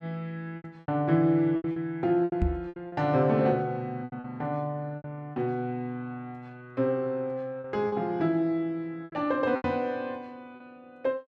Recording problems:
lost packets; 9% of the sound replaced, filled with repeated pitch periods
knock on the microphone; at 2.5 s and at 9.5 s; peak +6 dB vs average level

